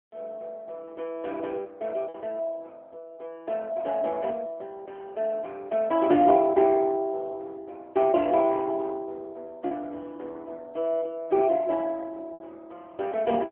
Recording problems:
phone line; 260 Hz to 3.8 kHz, AMR-NB
lost packets; 1.4% of the sound replaced, filled with repeated pitch periods

